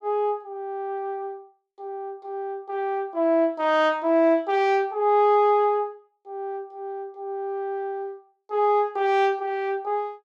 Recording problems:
none

